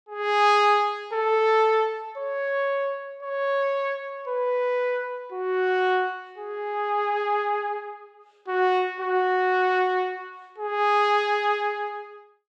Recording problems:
none

